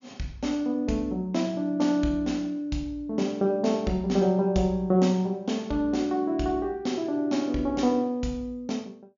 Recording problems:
low-pass filter; nothing above 7.1 kHz

